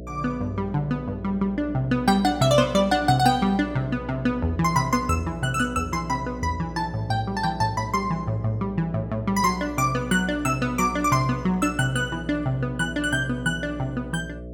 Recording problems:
hum; 60 Hz, harmonics up to 660 Hz, SNR 13 dB

